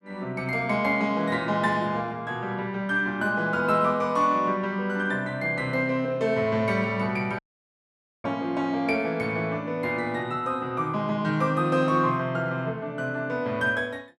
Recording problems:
audio cutting out; at 7.5 s for 1 s

